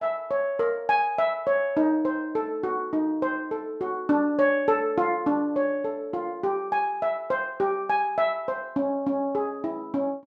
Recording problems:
none

